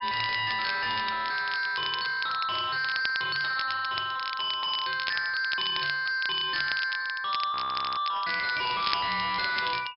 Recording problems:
low-pass filter; nothing above 5.3 kHz
distortion; soft clipping, signal-to-distortion ratio 5 dB
crackling; vinyl, SNR 9 dB
frozen audio; at 7.5 s

